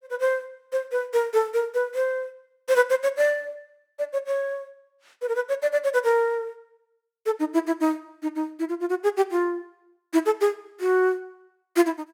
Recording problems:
none

